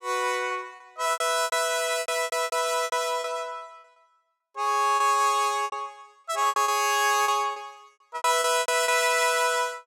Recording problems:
lost packets; 14% of the sound replaced, filled with repeated pitch periods

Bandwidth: 16.5 kHz